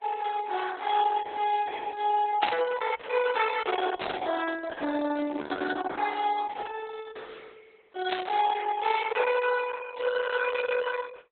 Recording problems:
lossy codec; Vorbis, then Opus, log-spectral distance 5 dB, nothing above 3.6 kHz
static burst; at 2.5 s, at 4 s and at 8 s; peak 0 dB vs average level

